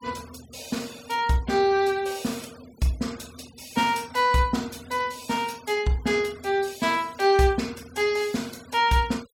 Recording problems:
denoising artefacts; signal-to-artefact ratio 23 dB

